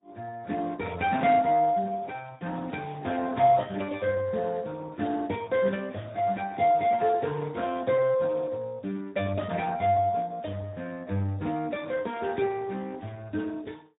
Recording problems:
treble cut off; nothing above 3.8 kHz
lossy compression; AAC, then Speex, log-spectral distance 4 dB

